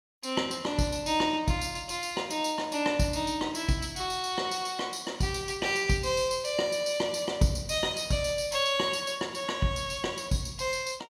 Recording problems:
none

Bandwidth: 16 kHz